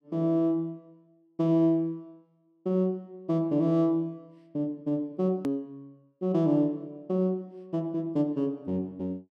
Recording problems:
hard cut with a click; at 5.5 s

